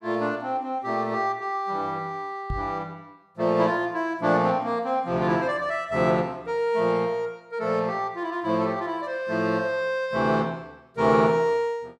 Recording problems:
microphone bump; at 2.5 s; peak -3 dB vs average level

